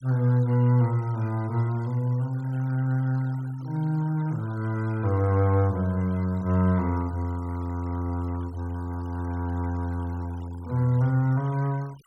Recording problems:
denoising artefacts; signal-to-artefact ratio 25 dB

